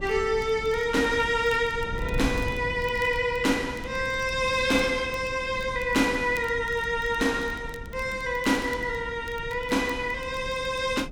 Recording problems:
wind on the microphone; below 160 Hz, SNR 14 dB
crackling; vinyl, SNR 26 dB

